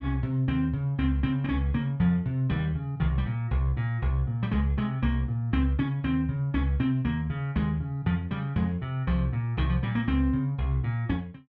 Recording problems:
none

